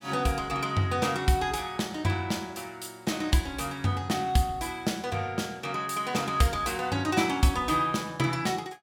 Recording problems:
none

